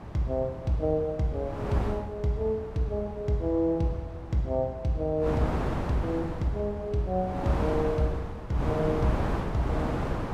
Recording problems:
wind noise; below 740 Hz, SNR 4 dB

